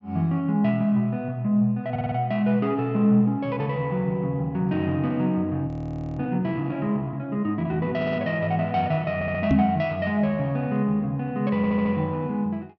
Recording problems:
treble cut off; nothing above 8 kHz
stutter; 4 times, first at 2 s
audio freezing; at 5.5 s for 0.5 s
microphone thump; at 9.5 s; peak +7 dB vs average level

